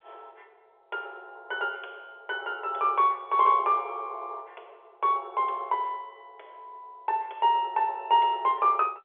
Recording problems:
telephone audio; 370 Hz to 3.6 kHz, G.711

